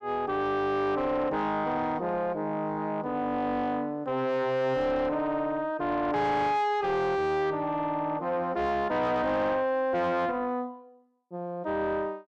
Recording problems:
distorted audio; soft clipping, signal-to-distortion ratio 7 dB

